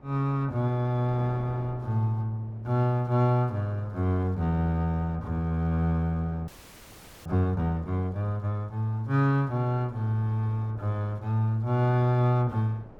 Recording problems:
wind noise; below 560 Hz, SNR 22 dB
audio freezing; at 6.5 s for 1 s

